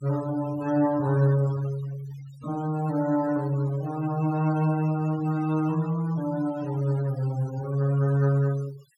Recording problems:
denoising artefacts; signal-to-artefact ratio 20 dB

